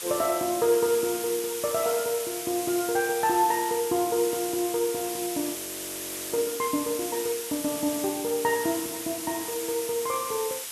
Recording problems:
hiss; slope +2 dB per octave, SNR 5 dB
audio freezing; at 5.5 s for 1 s

